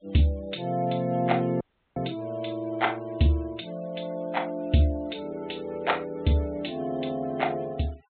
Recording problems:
treble cut off; nothing above 4 kHz
noise reduction artefacts; signal-to-artefact ratio 24 dB
dropout; at 1.5 s

